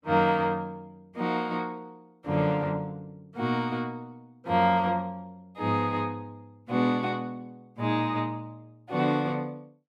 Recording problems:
none

